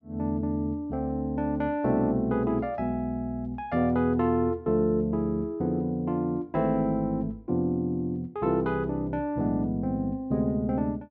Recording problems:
none

